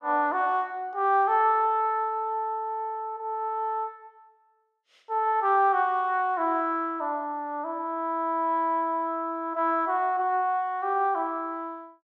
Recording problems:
none

